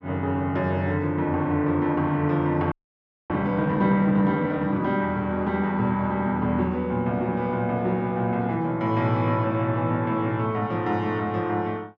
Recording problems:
frozen audio; at 2.5 s for 0.5 s

